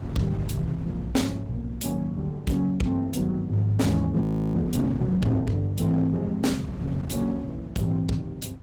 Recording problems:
codec artefacts; Opus, log-spectral distance 2 dB
distortion; hard clipping, signal-to-distortion ratio 12 dB
wind on the microphone; below 180 Hz, SNR 13 dB
audio freezing; at 4 s

